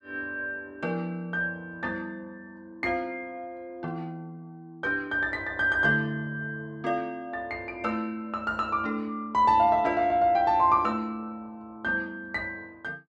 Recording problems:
none

